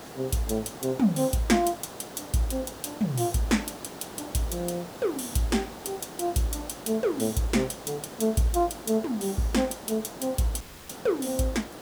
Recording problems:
hiss; SNR 13 dB
audio cutting out; at 11 s

